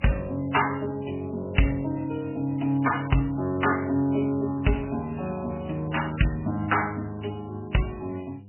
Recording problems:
lossy compression; MP3, log-spectral distance 6 dB, nothing above 3 kHz
hum; 50 Hz, harmonics up to 500 Hz, SNR 19 dB

